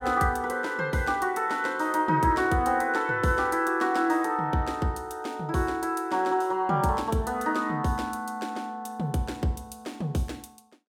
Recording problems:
none

